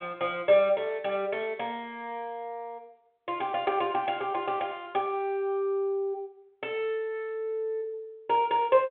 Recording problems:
telephone audio; 150 Hz to 3.5 kHz, G.726

